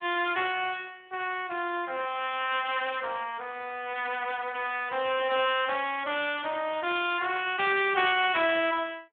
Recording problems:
telephone audio; 300 Hz to 3.5 kHz, Speex

